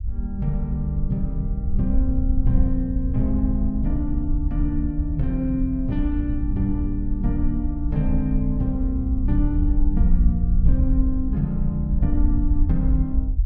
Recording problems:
rumble; below 62 Hz, SNR -1 dB

